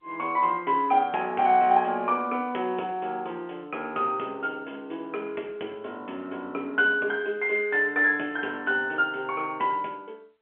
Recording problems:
phone line; 260 Hz to 3.2 kHz, G.711

